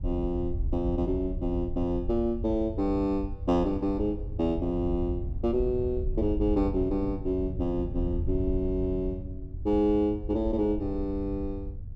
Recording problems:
low-frequency rumble; below 80 Hz, SNR 8 dB
wind noise; below 110 Hz, SNR 12 dB

